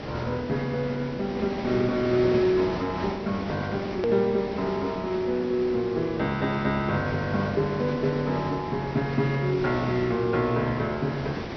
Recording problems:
treble missing; nothing above 5.8 kHz
hiss; slope -6 dB per octave, SNR 8 dB
edit click; at 4 s

